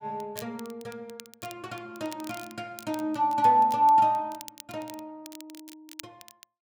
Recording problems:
crackle; vinyl, SNR 22 dB

